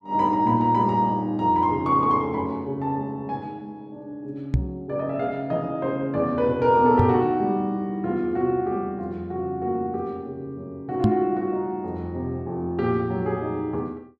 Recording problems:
microphone bump; at 4.5 s, at 7 s and at 11 s; peak +8 dB vs average level

